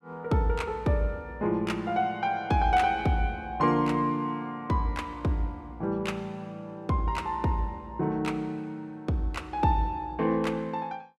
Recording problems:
none

